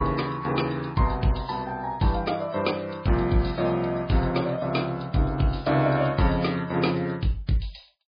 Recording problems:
lossy codec; MP3, log-spectral distance 6 dB

